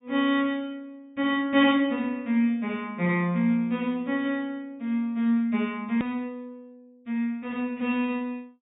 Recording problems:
treble cut off; nothing above 4 kHz
click at an edit; at 6 s

